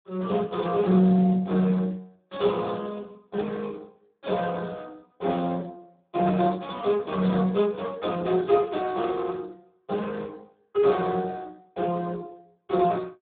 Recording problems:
telephone audio; 220 Hz to 2.2 kHz, Speex

